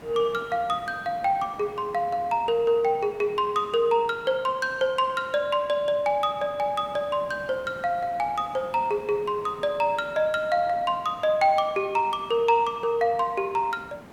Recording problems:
background hiss; slope -7 dB per octave, SNR 21 dB

